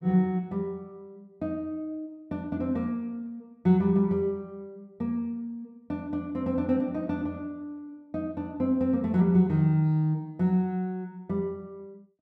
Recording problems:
none

